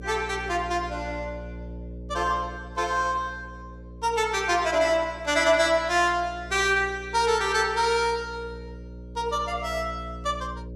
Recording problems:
hum; 60 Hz, harmonics up to 600 Hz, SNR 16 dB

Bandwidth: 14.5 kHz